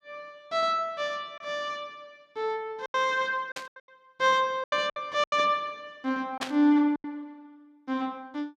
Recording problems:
lost packets; 7% of the sound replaced, filled with silence
static burst; at 3.5 s and at 6.5 s; peak 0 dB vs average level

